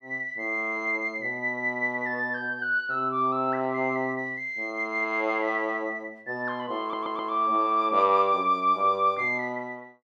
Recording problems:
stutter; at 7 s

